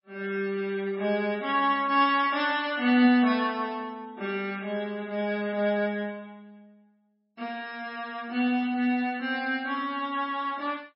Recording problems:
lossy codec; MP3, log-spectral distance 2 dB, nothing above 5 kHz

